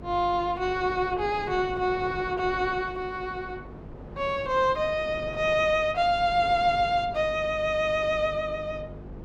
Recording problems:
electrical hum; 50 Hz, harmonics up to 500 Hz, SNR 19 dB
wind on the microphone; below 540 Hz, SNR 18 dB

